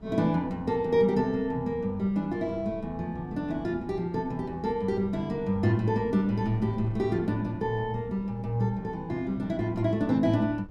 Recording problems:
wind on the microphone; below 210 Hz, SNR 18 dB

